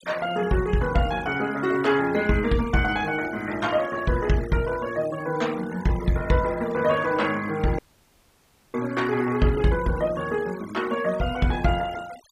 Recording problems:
denoising artefacts; signal-to-artefact ratio 17 dB
audio cutting out; at 8 s for 1 s

